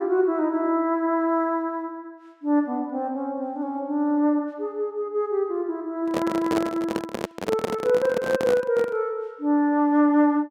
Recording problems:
handling noise; from 6 to 9 s; peak +1 dB vs average level

